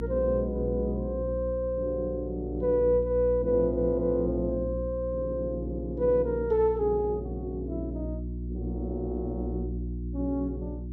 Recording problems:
electrical hum; 60 Hz, harmonics up to 360 Hz, SNR 7 dB

